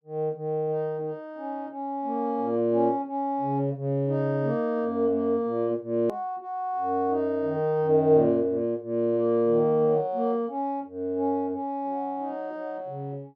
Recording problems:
click at an edit; at 6 s

